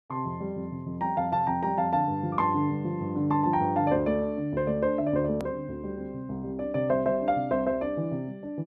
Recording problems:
hard cut with a click; at 5.5 s

